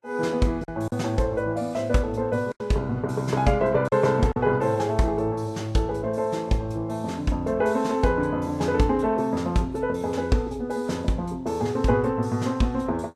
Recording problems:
lossy codec; Vorbis, log-spectral distance 2 dB, nothing above 12.7 kHz
packet loss; 1.8% of the sound replaced, filled with silence

